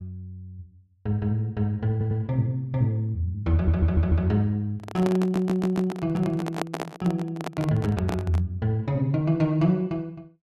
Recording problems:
audio stuttering; at 2 s, at 3.5 s and at 5 s
handling noise; from 5 to 8.5 s; peak +1 dB vs average level

